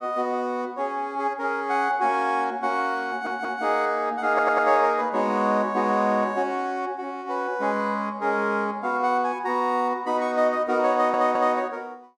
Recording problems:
audio stuttering; at 3 s, at 4.5 s and at 11 s

